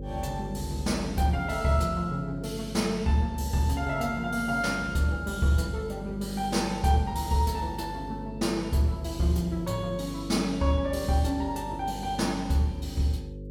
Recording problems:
hum; 50 Hz, harmonics up to 550 Hz, SNR 12 dB

